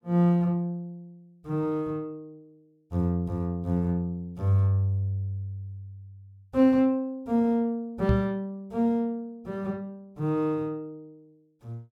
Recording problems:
knock on the microphone; at 8 s; peak +6 dB vs average level

